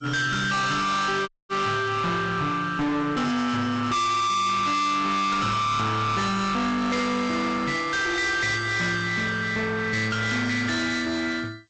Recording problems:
lossy compression; Vorbis, then G.722, log-spectral distance 3 dB, nothing above 8 kHz
distorted audio; hard clipping, uneven, signal-to-distortion ratio 4 dB
audio cutting out; at 1.5 s

